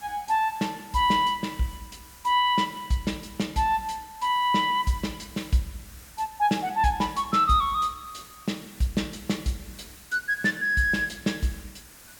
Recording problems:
background hiss; slope -1 dB per octave, SNR 21 dB

